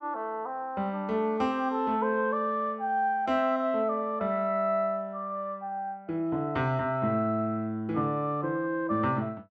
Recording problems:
none

